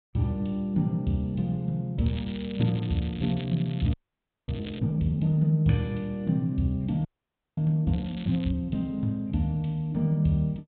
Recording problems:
low-pass filter; nothing above 4 kHz
crackling; from 2 to 5 s and at 8 s; loose cable, SNR 18 dB
frozen audio; at 4 s for 0.5 s and at 7 s for 0.5 s

